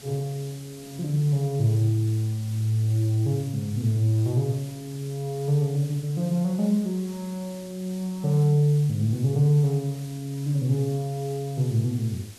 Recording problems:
hiss; SNR 20 dB

